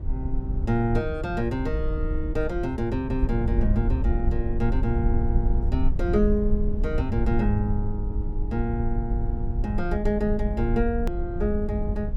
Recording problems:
rumble; below 70 Hz, SNR 1 dB
hard cut with a click; at 11 s

